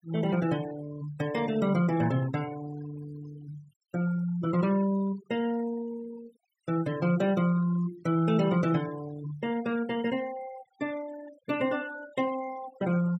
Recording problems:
noise reduction artefacts; signal-to-artefact ratio 18 dB

